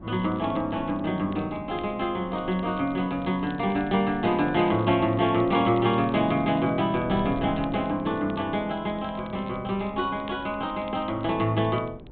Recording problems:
low-pass filter; nothing above 4 kHz
wind on the microphone; below 330 Hz, SNR 18 dB
crackling; vinyl, SNR 27 dB

